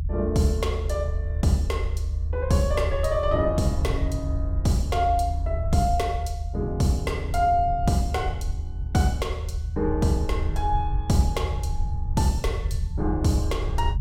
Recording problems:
rumble; below 78 Hz, SNR 3 dB

